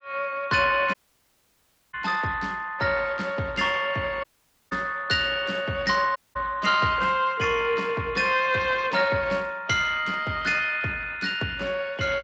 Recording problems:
codec artefacts; Speex, log-spectral distance 5 dB
audio cutting out; at 1 s for 1 s, at 4 s and at 6 s

